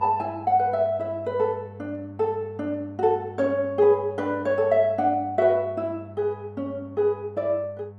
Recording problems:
hum; 50 Hz, harmonics up to 1.1 kHz, SNR 18 dB

